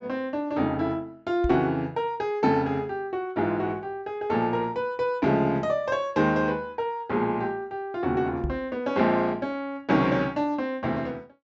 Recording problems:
low-pass filter; nothing above 7.5 kHz
microphone bump; at 1.5 s and at 8.5 s; peak 0 dB vs average level

